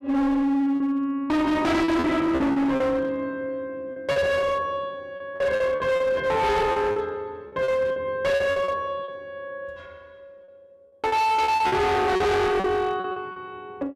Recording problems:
distorted audio; hard clipping, signal-to-distortion ratio 6 dB
lost packets; 10% of the sound replaced, filled with repeated pitch periods

